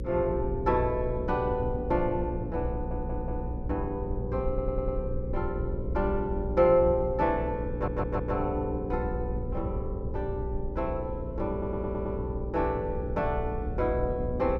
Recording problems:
mains hum; 60 Hz, harmonics up to 540 Hz, SNR 7 dB
rumble; below 88 Hz, SNR 9 dB
audio stuttering; 4 times, first at 2.5 s

